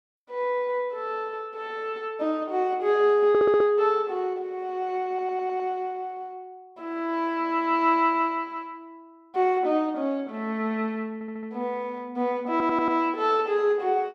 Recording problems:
stutter; 4 times, first at 3.5 s

